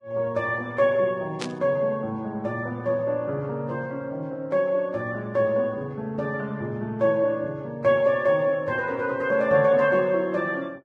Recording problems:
codec artefacts; Vorbis, log-spectral distance 2 dB
static burst; at 1.5 s; peak -4 dB vs average level

